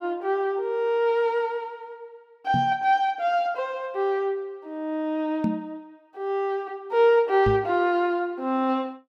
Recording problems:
microphone thump; at 2.5 s, at 5.5 s and at 7.5 s; peak +2 dB vs average level

